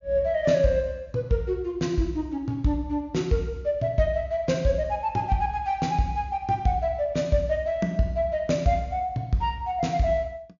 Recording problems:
low-pass filter; nothing above 7 kHz

